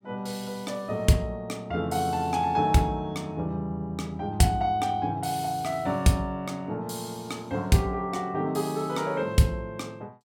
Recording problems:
none

